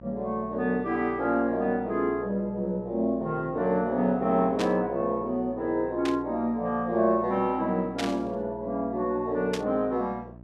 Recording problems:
hum; 60 Hz, harmonics up to 1 kHz, SNR 20 dB
burst of static; 4 times, first at 4.5 s; peak -1 dB vs average level

